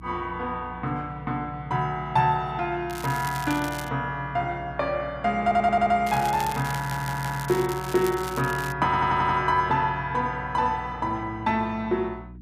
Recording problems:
hum; 60 Hz, harmonics up to 300 Hz, SNR 17 dB
crackling; from 3 to 4 s and from 6 to 8.5 s; loose cable, SNR 13 dB
audio stuttering; at 5.5 s, at 7 s and at 9 s

